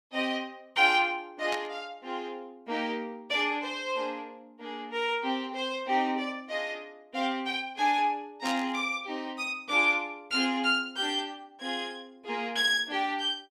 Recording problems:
burst of static; at 1.5 s and at 8.5 s; peak -3 dB vs average level

